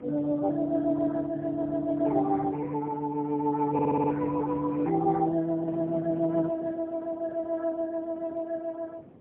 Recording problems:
telephone audio; 190 Hz to 2.5 kHz, AMR-NB, then MP3
wind on the microphone; below 460 Hz, SNR 19 dB
stutter; at 3.5 s

